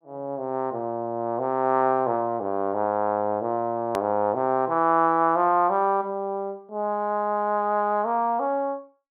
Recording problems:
click at an edit; at 4 s

